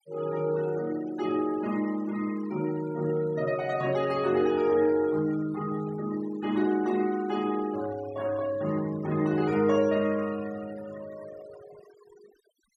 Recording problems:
denoising artefacts; signal-to-artefact ratio 19 dB

